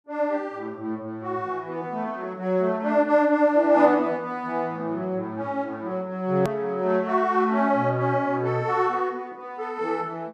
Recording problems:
click at an edit; at 6.5 s

